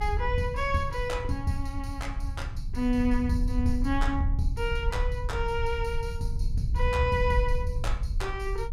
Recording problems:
rumble; below 72 Hz, SNR 1 dB

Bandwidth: 16 kHz